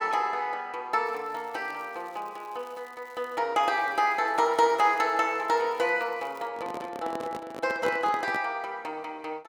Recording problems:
crackling; from 1 to 3.5 s and from 3.5 to 6.5 s; loose cable, SNR 29 dB
handling noise; from 6.5 to 8.5 s; peak -2 dB vs average level

